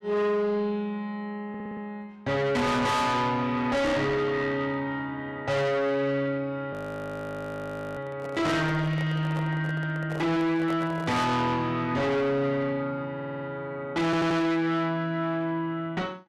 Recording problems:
distortion; soft clipping, signal-to-distortion ratio 6 dB
stutter; at 1.5 s, at 13 s and at 14 s
audio freezing; at 6.5 s for 1 s
microphone handling noise; from 8 to 12 s; peak -5 dB vs average level

